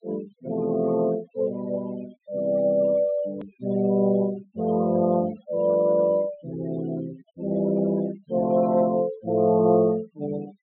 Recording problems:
treble missing; nothing above 4 kHz
denoising artefacts; signal-to-artefact ratio 19 dB
click at an edit; at 3.5 s

